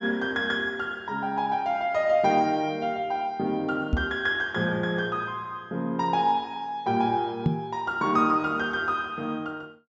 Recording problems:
treble missing; nothing above 8 kHz
microphone thump; at 4 s and at 7.5 s; peak +6 dB vs average level

